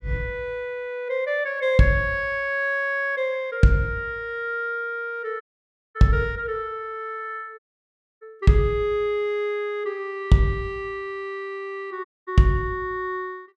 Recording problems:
dropout; at 5.5 s for 0.5 s, at 7.5 s for 0.5 s and at 12 s

